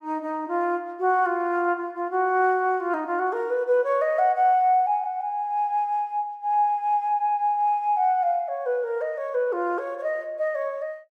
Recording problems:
none

